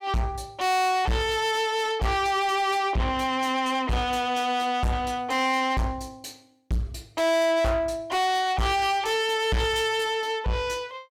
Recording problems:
distorted audio; soft clipping, signal-to-distortion ratio 7 dB

